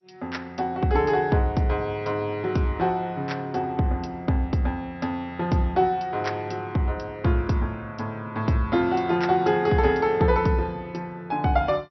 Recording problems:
codec artefacts; MP2, log-spectral distance 2 dB, nothing above 5.8 kHz

